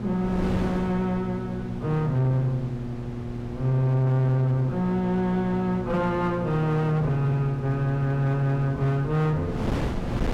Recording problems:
distortion; hard clipping, uneven, signal-to-distortion ratio 11 dB
electrical hum; 60 Hz, harmonics up to 840 Hz, SNR 11 dB
wind noise; below 390 Hz, SNR 11 dB

